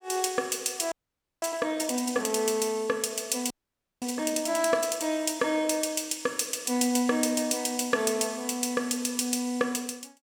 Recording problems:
frozen audio; at 1 s and at 3.5 s for 0.5 s

